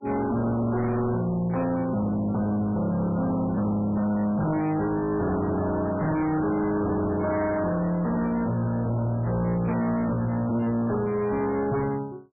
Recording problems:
lossy codec; MP3, log-spectral distance 3 dB, nothing above 2.4 kHz
distorted audio; hard clipping, signal-to-distortion ratio 7 dB

